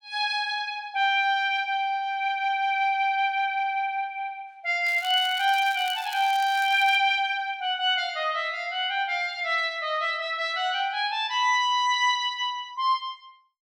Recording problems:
crackling; from 5 to 7 s; loose cable, SNR 18 dB

